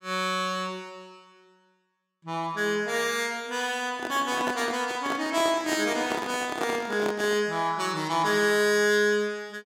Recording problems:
handling noise; from 4 to 7.5 s; peak 0 dB vs average level

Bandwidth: 16.5 kHz